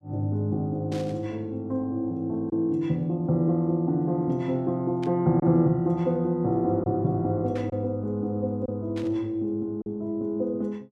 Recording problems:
lost packets; 1.3% of the sound replaced, filled with silence
burst of static; 4 times, first at 1 s; peak -13 dB vs average level

